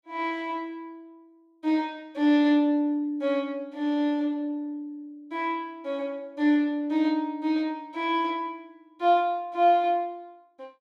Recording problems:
none

